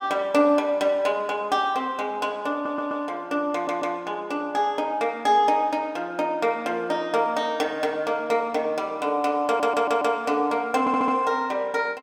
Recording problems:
stutter; 4 times, first at 2.5 s

